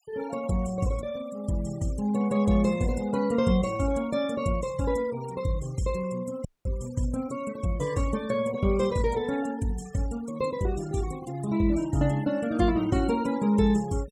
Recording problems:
denoising artefacts; signal-to-artefact ratio 18 dB
dropout; at 6.5 s

